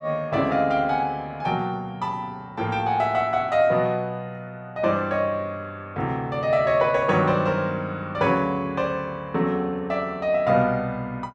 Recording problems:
none

